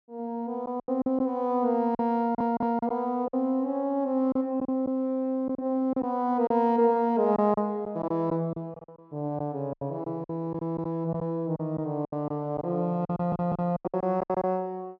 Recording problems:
lost packets; 10% of the sound replaced, filled with silence
stutter; at 2 s and at 13 s

